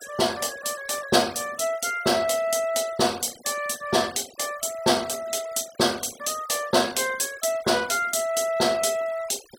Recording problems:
denoising artefacts; signal-to-artefact ratio 18 dB

